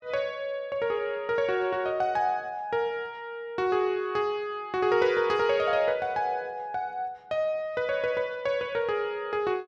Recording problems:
none

